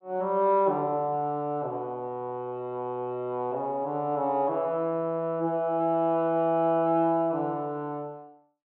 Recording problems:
treble missing; nothing above 4 kHz

